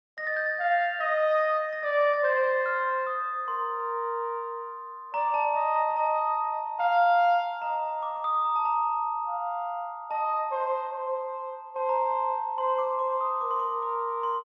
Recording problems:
none

